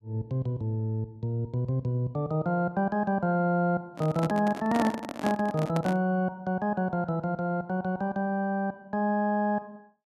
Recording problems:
microphone handling noise; from 4 to 6 s; peak +1 dB vs average level

